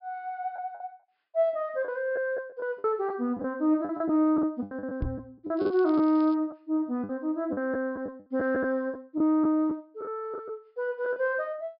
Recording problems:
low-pass filter; nothing above 5.5 kHz
lost packets; 9% of the sound replaced, filled with the last packet
knock on the microphone; at 5 s; peak +1 dB vs average level
crackle; at 5.5 s; loose cable, SNR 27 dB

